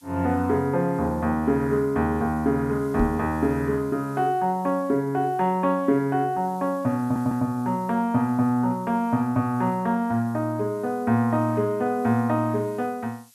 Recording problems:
background hiss; SNR 29 dB
knock on the microphone; at 3 s; peak +1 dB vs average level
stutter; at 7 s

